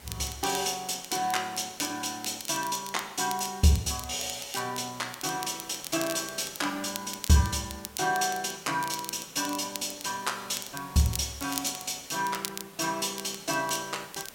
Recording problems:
hiss; slope -3 dB per octave, SNR 19 dB
crackling; vinyl, SNR 11 dB

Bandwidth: 16.5 kHz